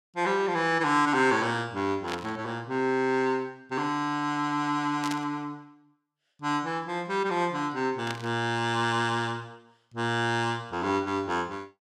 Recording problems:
burst of static; at 2 s, at 5 s and at 8 s; peak -3 dB vs average level

